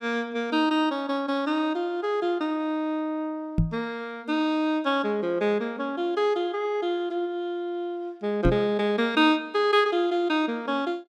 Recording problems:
knock on the microphone; at 3.5 s and at 8.5 s; peak +6 dB vs average level

